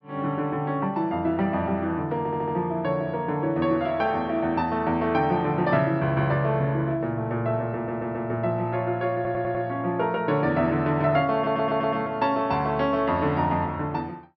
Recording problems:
treble missing; nothing above 5.6 kHz
stutter; 4 times, first at 2 s

